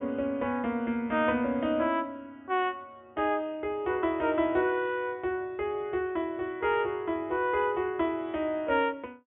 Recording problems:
treble cut off; nothing above 3.4 kHz

